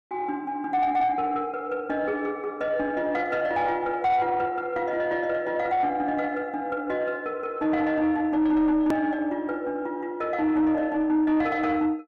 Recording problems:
distorted audio; soft clipping, signal-to-distortion ratio 11 dB
edit click; at 9 s

